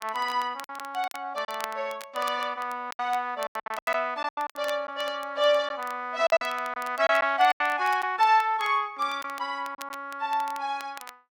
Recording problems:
crackle; vinyl, SNR 19 dB
packet loss; 9% of the sound replaced, filled with silence

